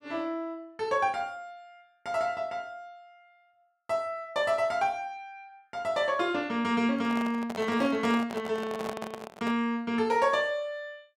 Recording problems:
handling noise; from 7 to 9.5 s; peak -3 dB vs average level

